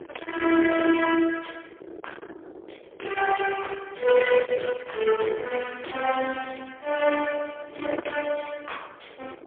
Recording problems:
telephone audio; 300 Hz to 3.3 kHz, AMR-NB, then MP3
distorted audio; soft clipping, signal-to-distortion ratio 8 dB
wind on the microphone; below 1.6 kHz, SNR 14 dB

